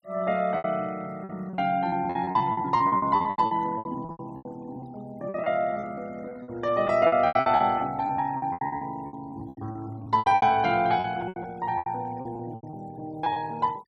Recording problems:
noise reduction artefacts; signal-to-artefact ratio 25 dB
lost packets; 19% of the sound replaced, filled with repeated pitch periods

